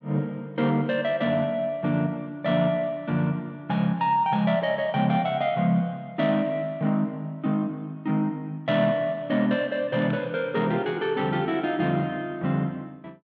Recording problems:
none

